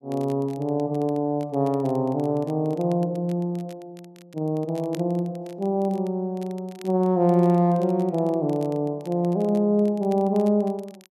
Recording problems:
crackling; vinyl, SNR 29 dB

